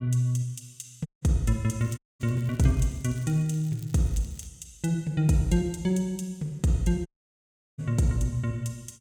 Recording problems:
dropout; at 1 s, at 2 s and at 7 s for 0.5 s
crackle; from 2 to 4.5 s; loose cable, SNR 26 dB

